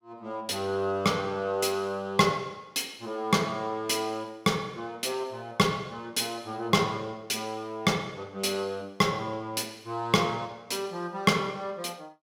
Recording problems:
none

